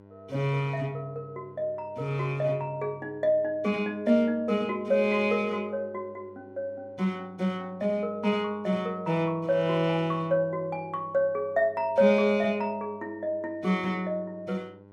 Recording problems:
hum; 50 Hz, harmonics up to 1.5 kHz, SNR 25 dB

